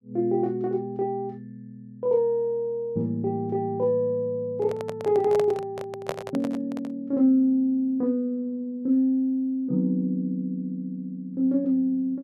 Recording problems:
microphone handling noise; from 4.5 to 7 s; peak 0 dB vs average level

